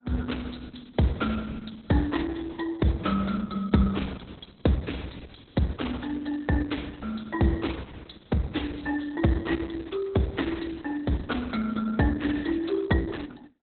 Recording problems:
lossy compression; Opus, log-spectral distance 7 dB, nothing above 4 kHz

